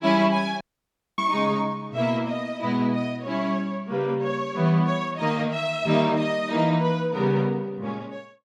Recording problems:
audio cutting out; at 0.5 s for 0.5 s

